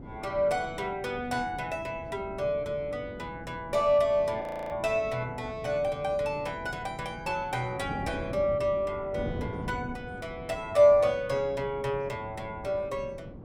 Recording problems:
wind on the microphone; below 350 Hz, SNR 13 dB
frozen audio; at 4.5 s

